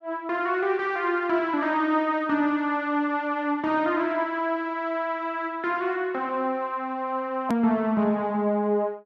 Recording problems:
click at an edit; at 7.5 s

